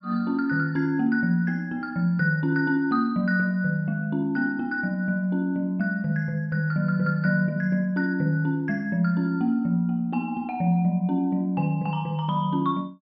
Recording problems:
treble cut off; nothing above 5.5 kHz

